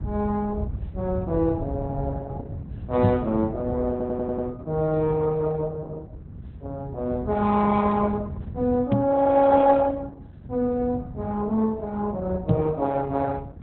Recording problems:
lossy codec; Opus, log-spectral distance 2 dB, nothing above 3.9 kHz
rumble; below 120 Hz, SNR 10 dB
microphone thump; at 3 s, at 9 s and at 12 s; peak +6 dB vs average level
audio stuttering; at 4 s

